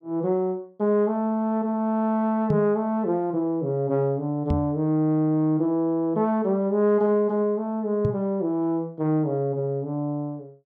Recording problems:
microphone bump; at 2.5 s, at 4.5 s and at 8 s; peak +3 dB vs average level

